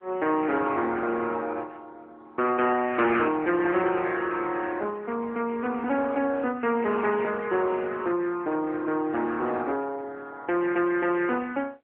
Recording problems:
phone line; 240 Hz to 3 kHz, AMR-NB
distortion; soft clipping, signal-to-distortion ratio 13 dB

